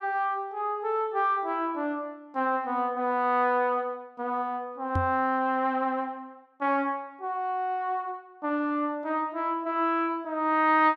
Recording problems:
microphone bump; at 5 s; peak +3 dB vs average level

